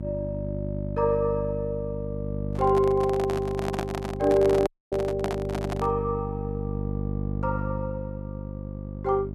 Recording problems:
electrical hum; 50 Hz, harmonics up to 650 Hz, SNR 5 dB
microphone handling noise; from 2.5 to 6 s; peak +1 dB vs average level
dropout; at 4.5 s

